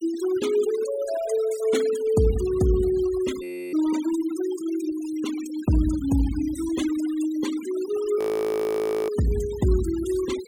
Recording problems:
noise reduction artefacts; signal-to-artefact ratio 15 dB
frozen audio; at 3.5 s and at 8 s for 1 s

